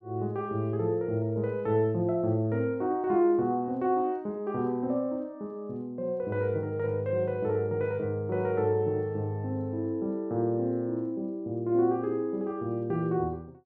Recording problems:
none

